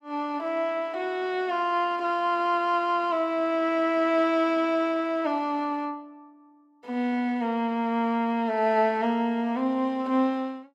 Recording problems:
none

